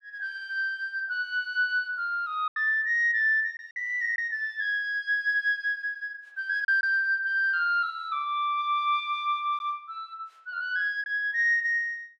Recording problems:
lost packets; 2% of the sound replaced, filled with silence

